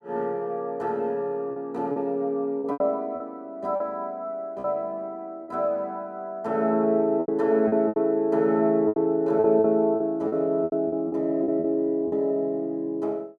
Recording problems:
packet loss; 8% of the sound replaced, filled with repeated pitch periods

